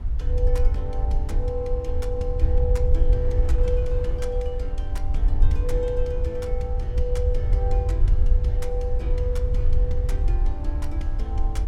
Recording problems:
low-frequency rumble; below 64 Hz, SNR -6 dB
wind noise; below 760 Hz, SNR 16 dB

